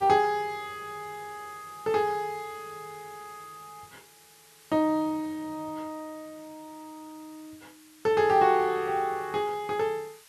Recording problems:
background hiss; slope +2 dB per octave, SNR 25 dB

